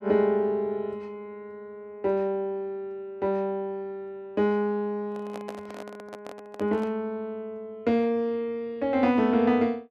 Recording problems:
microphone handling noise; from 5 to 7 s; peak -7 dB vs average level

